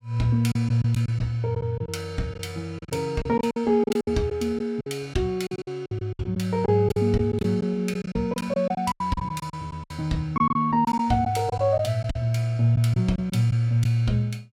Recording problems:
lost packets; 11% of the sound replaced, filled with silence

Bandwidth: 18 kHz